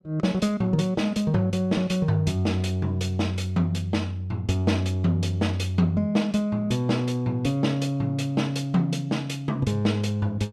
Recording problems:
none

